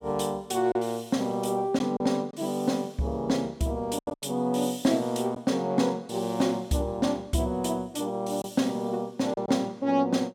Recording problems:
packet loss; 3% of the sound replaced, filled with silence

